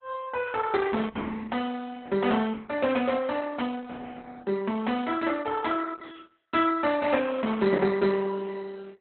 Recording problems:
codec artefacts; Opus, log-spectral distance 5 dB, nothing above 4 kHz

